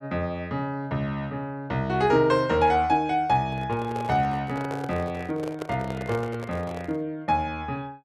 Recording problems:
handling noise; from 3.5 to 7 s; peak -4 dB vs average level

